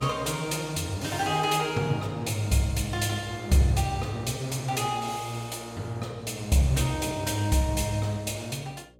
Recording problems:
hum; 60 Hz, harmonics up to 600 Hz, SNR 26 dB

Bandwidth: 17 kHz